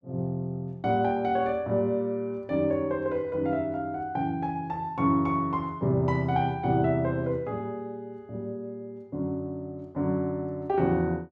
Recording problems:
none

